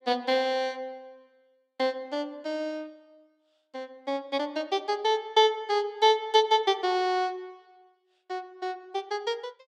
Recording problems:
none

